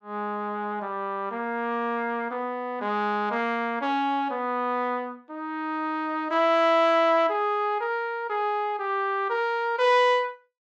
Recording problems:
none

